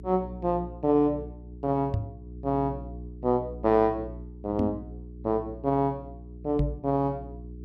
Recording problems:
hum; 60 Hz, harmonics up to 420 Hz, SNR 14 dB
microphone thump; at 2 s, at 4.5 s and at 6.5 s; peak +4 dB vs average level

